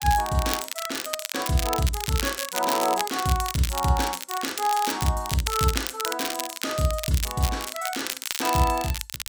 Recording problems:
crackle; vinyl, SNR 5 dB

